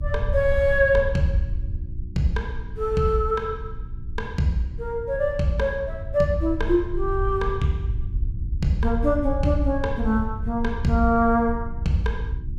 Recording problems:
electrical hum; 60 Hz, harmonics up to 360 Hz, SNR 19 dB
low-frequency rumble; below 76 Hz, SNR 7 dB

